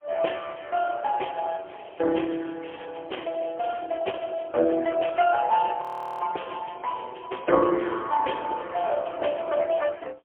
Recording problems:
telephone audio; 300 Hz to 3.2 kHz, AMR-NB, then MP3
audio freezing; at 6 s

